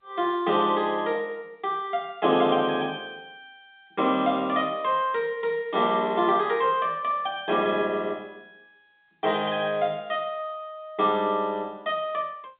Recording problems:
phone line; 220 Hz to 3.7 kHz, G.711

